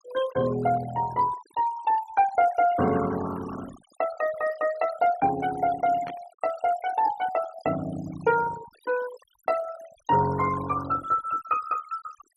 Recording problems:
noise reduction artefacts; signal-to-artefact ratio 15 dB
burst of static; at 6 s; peak -12 dB vs average level

